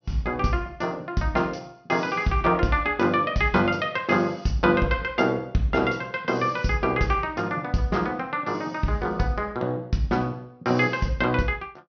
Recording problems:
low-pass filter; nothing above 6.2 kHz

